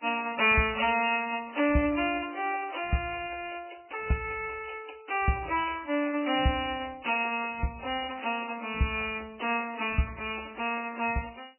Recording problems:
lossy codec; MP3, log-spectral distance 9 dB, nothing above 2.6 kHz

